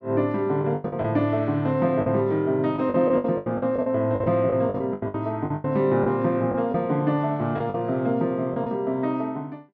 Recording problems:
packet loss; 11% of the sound replaced, filled with the last packet

